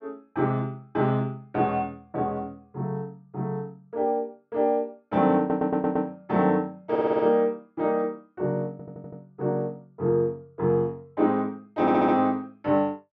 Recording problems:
audio stuttering; 4 times, first at 5.5 s

